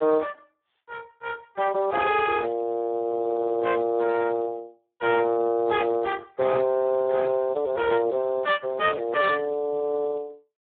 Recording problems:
phone line; 260 Hz to 2.8 kHz, Speex

